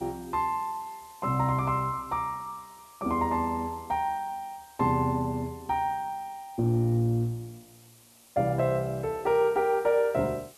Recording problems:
background hiss; SNR 25 dB

